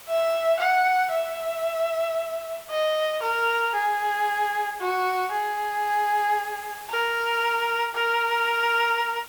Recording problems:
background hiss; SNR 18 dB

